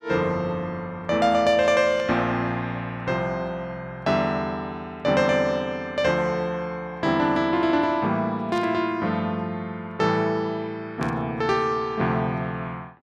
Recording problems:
burst of static; at 2 s, at 8.5 s and at 11 s; peak -11 dB vs average level

